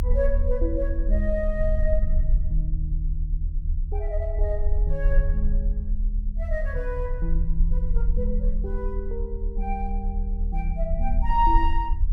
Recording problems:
low-frequency rumble; below 44 Hz, SNR -3 dB

